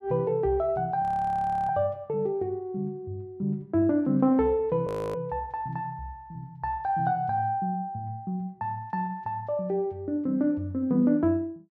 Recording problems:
audio freezing; at 1 s for 0.5 s and at 5 s

